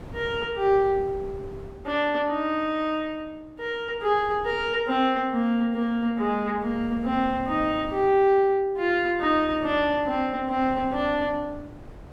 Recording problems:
wind on the microphone; below 400 Hz, SNR 20 dB

